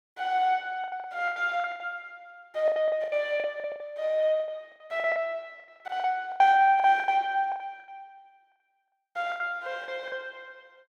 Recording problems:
packet loss; 16% of the sound replaced, filled with the last packet

